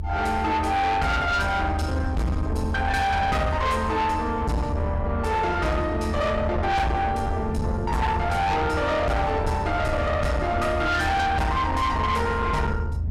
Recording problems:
distortion; soft clipping, signal-to-distortion ratio 7 dB
low-frequency rumble; below 160 Hz, strongest tone 78 Hz, SNR 5 dB

